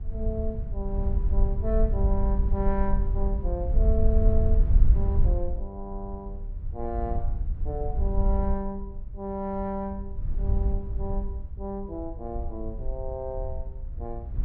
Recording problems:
wind noise; below 64 Hz, SNR -5 dB

